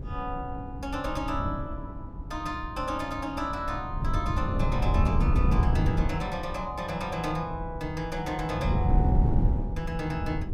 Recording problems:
wind noise; below 140 Hz, SNR -3 dB

